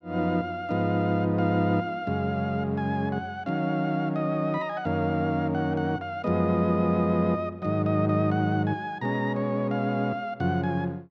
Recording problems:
none

